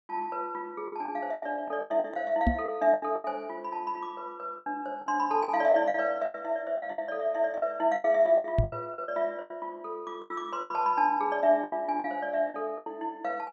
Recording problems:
lost packets; 13% of the sound replaced, filled with the last packet
microphone bump; at 2.5 s and at 8.5 s; peak +7 dB vs average level

